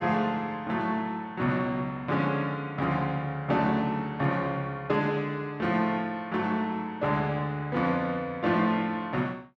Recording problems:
none

